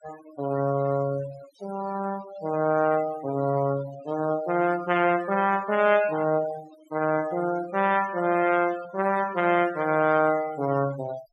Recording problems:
denoising artefacts; signal-to-artefact ratio 16 dB
static burst; at 1.5 s and at 4 s; peak -26 dB vs average level

